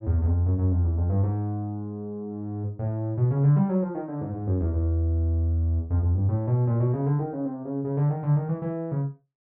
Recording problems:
none

